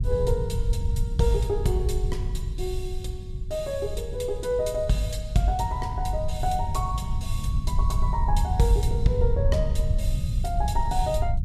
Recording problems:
rumble; below 88 Hz, SNR 0 dB

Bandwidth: 14.5 kHz